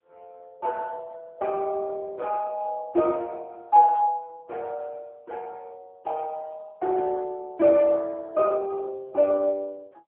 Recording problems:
phone line; 220 Hz to 2.3 kHz, AMR-NB

